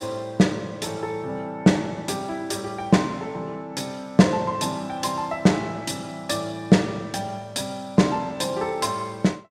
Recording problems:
none

